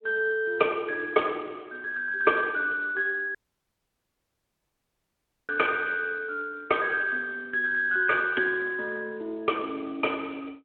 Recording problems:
telephone audio; 240 Hz to 3.5 kHz, Speex
dropout; at 3.5 s for 2 s

